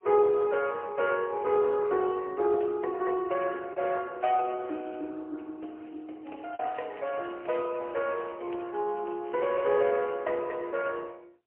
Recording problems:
phone line; 280 Hz to 2.8 kHz, AMR-NB, then MP3
packet loss; 0.6% of the sound replaced, filled with the last packet
crackle; from 6 to 9.5 s; loose cable, SNR 27 dB

